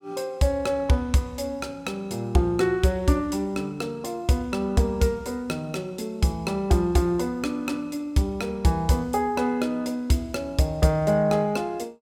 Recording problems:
none

